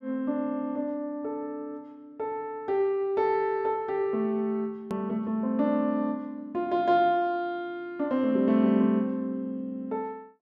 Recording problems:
hard cut with a click; at 5 s

